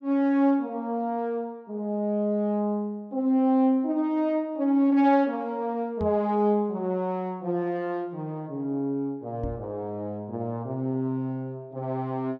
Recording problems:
microphone thump; at 6 s and at 9.5 s; peak -4 dB vs average level

